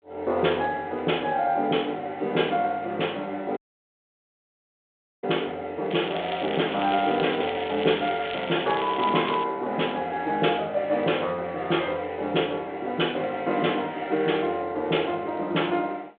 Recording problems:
phone line; 300 Hz to 3.5 kHz, G.726
audio cutting out; at 3.5 s for 1.5 s
crackle; from 6 to 9.5 s; loose cable, SNR 10 dB

